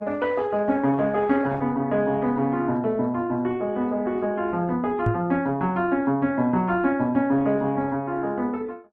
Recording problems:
lossy compression; Opus, then Opus, log-spectral distance 2 dB
microphone bump; at 5 s; peak +3 dB vs average level

